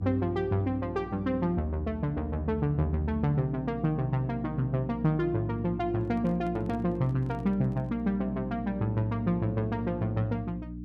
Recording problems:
hum; 60 Hz, harmonics up to 300 Hz, SNR 11 dB
handling noise; from 6 to 8 s; peak -10 dB vs average level

